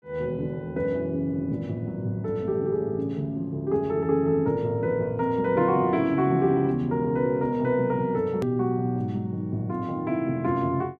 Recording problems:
edit click; at 8.5 s

